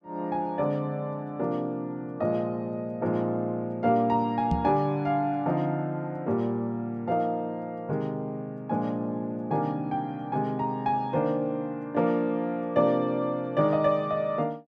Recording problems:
microphone thump; at 4.5 s; peak +4 dB vs average level

